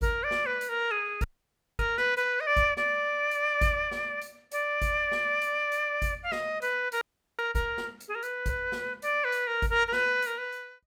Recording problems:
frozen audio; at 1 s for 0.5 s and at 7 s

